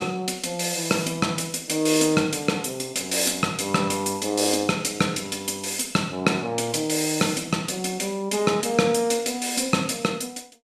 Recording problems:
none

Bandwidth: 14.5 kHz